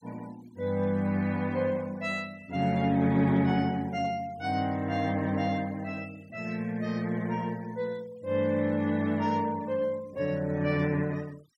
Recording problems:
denoising artefacts; signal-to-artefact ratio 25 dB

